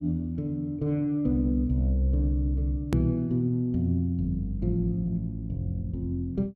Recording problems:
click at an edit; at 3 s

